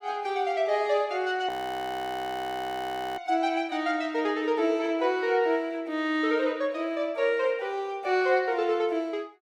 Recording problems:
audio freezing; at 1.5 s for 1.5 s

